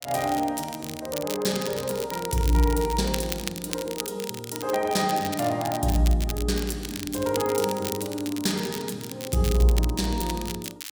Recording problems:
crackle; vinyl, SNR 9 dB

